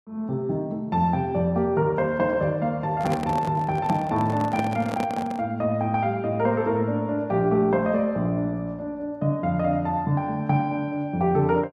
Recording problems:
microphone handling noise; from 3 to 5.5 s; peak -1 dB vs average level

